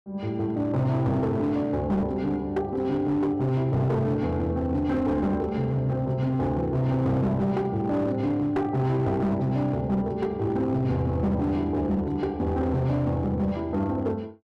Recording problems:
distorted audio; hard clipping, signal-to-distortion ratio 12 dB

